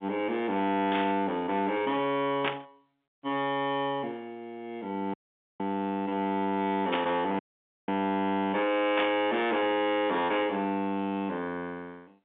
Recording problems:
telephone audio; 150 Hz to 3.7 kHz, G.711
distorted audio; hard clipping, signal-to-distortion ratio 10 dB
static burst; 4 times, first at 1 s; peak +3 dB vs average level
audio cutting out; at 5 s and at 7.5 s

